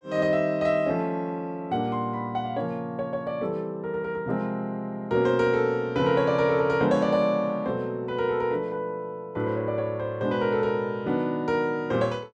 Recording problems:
none

